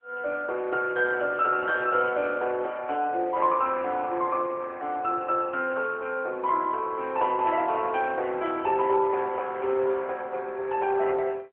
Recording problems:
phone line; 300 Hz to 3.6 kHz, AMR-NB

